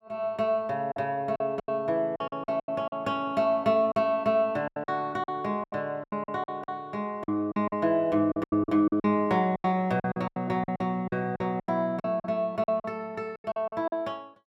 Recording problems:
lost packets; 15% of the sound replaced, filled with silence

